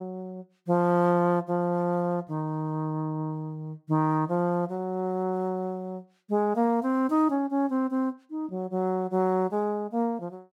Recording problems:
none

